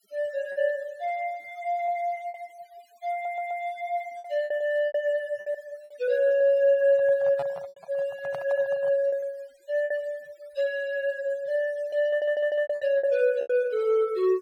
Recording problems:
denoising artefacts; signal-to-artefact ratio 27 dB
lost packets; 8% of the sound replaced, filled with repeated pitch periods
audio stuttering; at 3 s and at 12 s
microphone handling noise; from 7 to 9 s; peak -5 dB vs average level

